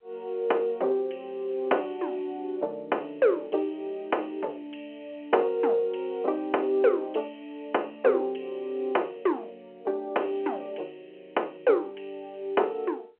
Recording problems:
telephone audio; 320 Hz to 3.2 kHz, G.711

